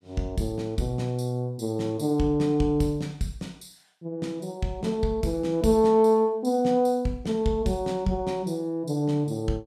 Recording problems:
none

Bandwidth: 14.5 kHz